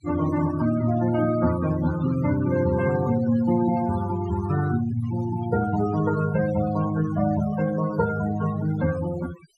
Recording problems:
noise reduction artefacts; signal-to-artefact ratio 12 dB

